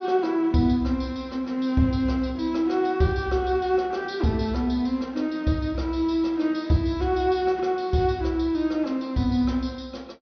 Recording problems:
treble cut off; nothing above 6.1 kHz

